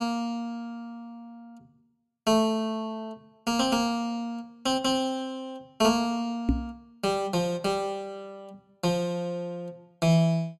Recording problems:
knock on the microphone; at 6.5 s; peak +7 dB vs average level

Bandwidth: 15.5 kHz